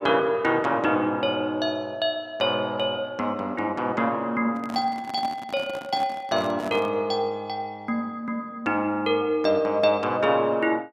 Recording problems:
handling noise; from 4.5 to 7 s; peak -7 dB vs average level

